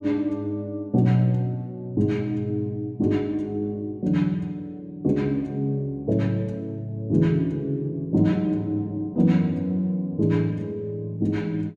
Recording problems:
none

